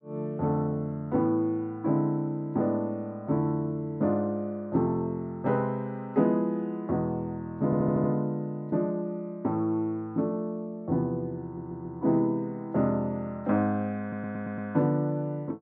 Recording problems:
audio stuttering; at 7.5 s, at 11 s and at 14 s

